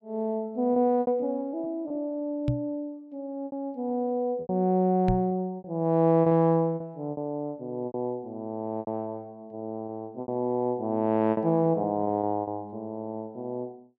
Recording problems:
packet loss; 8% of the sound replaced, filled with repeated pitch periods
microphone bump; at 2.5 s and at 5 s; peak +4 dB vs average level

